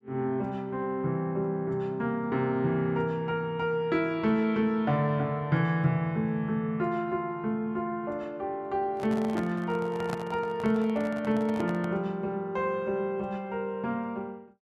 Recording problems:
handling noise; from 9 to 12 s; peak -2 dB vs average level

